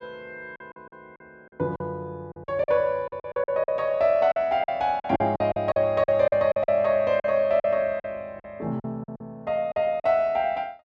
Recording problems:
lost packets; 13% of the sound replaced, filled with silence

